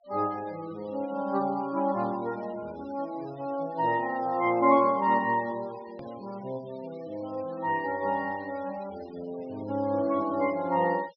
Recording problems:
low-pass filter; nothing above 5.5 kHz
denoising artefacts; signal-to-artefact ratio 24 dB
hard cut with a click; at 6 s

